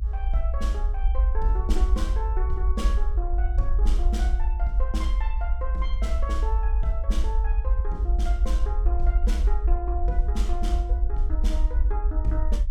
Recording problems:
low-frequency rumble; below 56 Hz, SNR -10 dB

